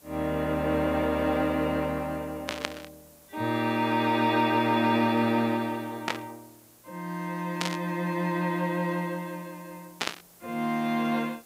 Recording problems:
hiss; SNR 26 dB
burst of static; 4 times, first at 2.5 s; peak +3 dB vs average level

